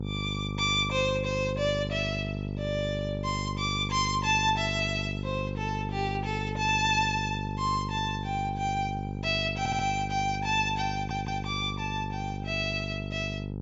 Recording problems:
low-pass filter; nothing above 8 kHz
hum; 50 Hz, harmonics up to 900 Hz, SNR 5 dB
stutter; at 9.5 s and at 11 s

